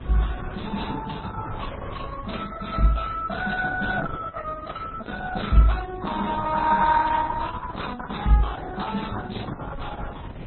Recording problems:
lossy compression; Opus, then MP3, log-spectral distance 5 dB, nothing above 4 kHz
hum; 50 Hz, harmonics up to 600 Hz, SNR 21 dB
wind on the microphone; below 230 Hz, SNR 17 dB

